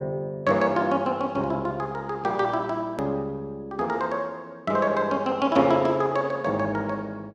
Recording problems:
click at an edit; at 3 s

